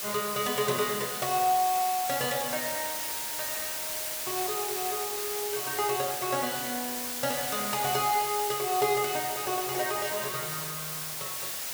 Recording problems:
background hiss; slope 0 dB per octave, SNR 1 dB

